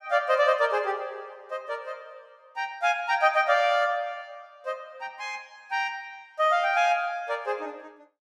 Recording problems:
none

